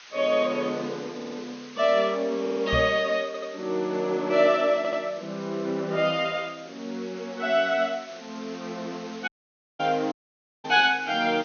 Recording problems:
treble missing; nothing above 6.5 kHz
background hiss; SNR 20 dB
audio stuttering; 4 times, first at 1 s
knock on the microphone; at 2.5 s; peak -1 dB vs average level
dropout; at 9.5 s for 0.5 s and at 10 s for 0.5 s

